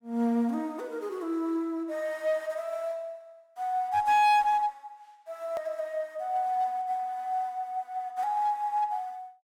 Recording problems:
distortion; hard clipping, uneven, signal-to-distortion ratio 10 dB
hard cut with a click; at 5.5 s

